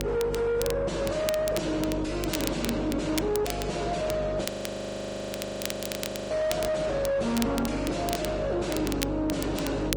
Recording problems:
codec artefacts; Vorbis, log-spectral distance 2 dB, nothing above 18.9 kHz
distortion; soft clipping, signal-to-distortion ratio 6 dB
electrical hum; 50 Hz, harmonics up to 550 Hz, SNR 5 dB
crackle; vinyl, SNR 9 dB
frozen audio; at 4.5 s for 2 s

